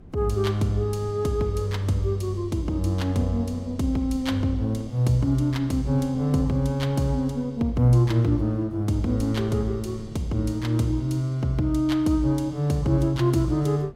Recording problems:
wind on the microphone; below 220 Hz, SNR 21 dB

